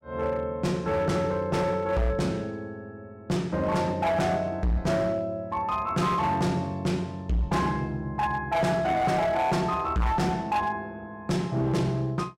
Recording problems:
distorted audio; hard clipping, signal-to-distortion ratio 8 dB

